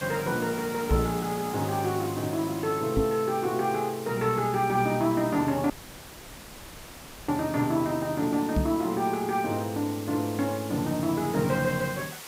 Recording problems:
background hiss; slope -1 dB per octave, SNR 14 dB
microphone bump; at 1 s, at 3 s and at 8.5 s; peak +5 dB vs average level
audio cutting out; at 5.5 s for 1.5 s

